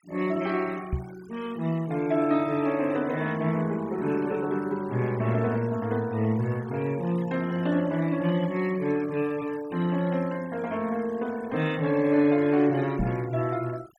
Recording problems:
noise reduction artefacts; signal-to-artefact ratio 21 dB
knock on the microphone; at 1 s and at 13 s; peak +2 dB vs average level

